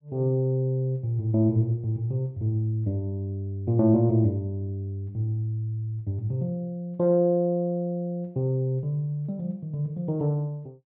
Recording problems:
treble cut off; nothing above 5.5 kHz

